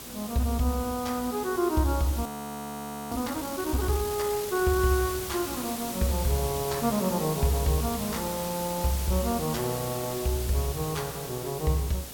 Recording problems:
electrical hum; 60 Hz, harmonics up to 540 Hz, SNR 24 dB
background hiss; slope -2 dB per octave, SNR 7 dB
audio freezing; at 2.5 s for 1 s

